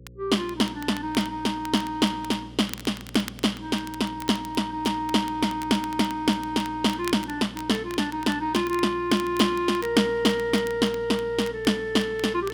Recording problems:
electrical hum; 60 Hz, harmonics up to 540 Hz, SNR 20 dB
crackle; vinyl, SNR 19 dB

